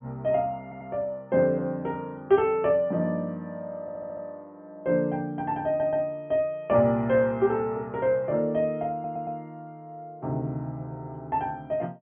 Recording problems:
treble missing; nothing above 3.4 kHz
stutter; 4 times, first at 0.5 s

